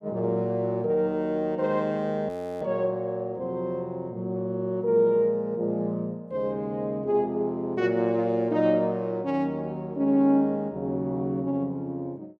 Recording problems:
audio freezing; at 2.5 s

